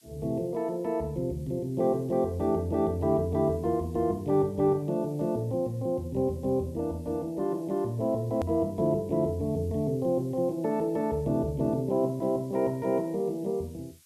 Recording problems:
hiss; slope +6 dB per octave, SNR 29 dB
click at an edit; at 8.5 s

